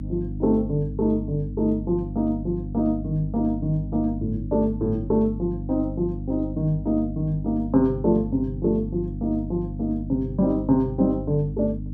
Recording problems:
electrical hum; 50 Hz, harmonics up to 300 Hz, SNR 8 dB

